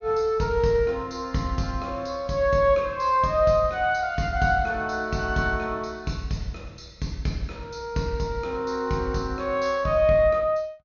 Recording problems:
treble missing; nothing above 7 kHz

